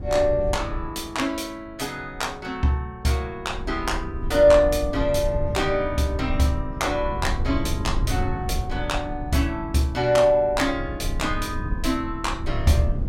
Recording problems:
wind noise; below 96 Hz, SNR 7 dB

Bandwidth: 16 kHz